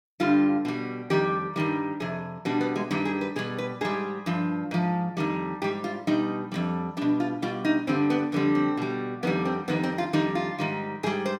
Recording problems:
none

